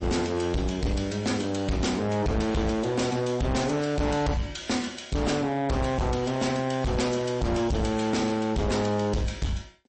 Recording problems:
lossy codec; MP3, log-spectral distance 4 dB, nothing above 8.2 kHz
distortion; soft clipping, signal-to-distortion ratio 6 dB

